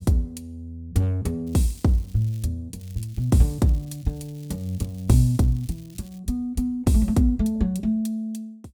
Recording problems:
crackle; from 1.5 to 2.5 s and from 3 to 6 s; loose cable, SNR 28 dB

